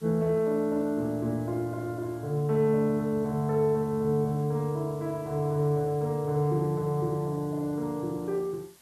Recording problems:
hiss; slope -1 dB per octave, SNR 27 dB

